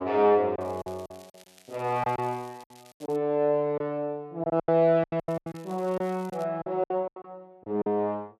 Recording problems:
packet loss; 12% of the sound replaced, filled with silence
crackle; from 0.5 to 3 s and from 5 to 6.5 s; loose cable, SNR 27 dB

